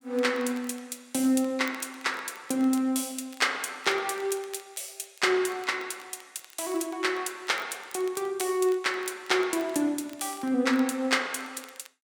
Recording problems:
crackling; vinyl, SNR 23 dB

